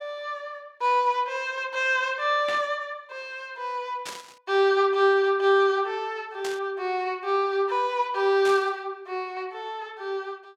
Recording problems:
static burst; 4 times, first at 2.5 s; peak -6 dB vs average level

